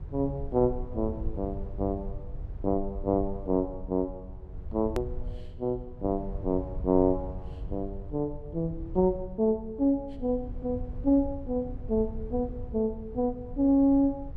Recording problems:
rumble; below 82 Hz, SNR 12 dB
click at an edit; at 5 s

